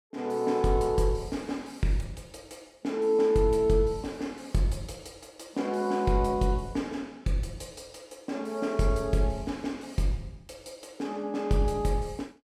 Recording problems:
none

